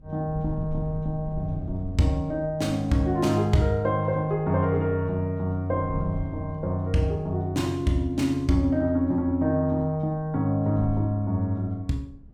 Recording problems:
wind on the microphone; below 130 Hz, SNR 16 dB

